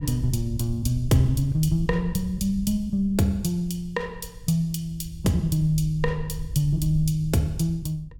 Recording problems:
wind noise; below 80 Hz, SNR 12 dB

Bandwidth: 17 kHz